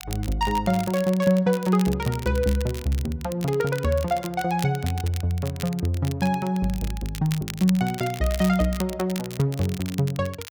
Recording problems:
crackling; vinyl, SNR 15 dB

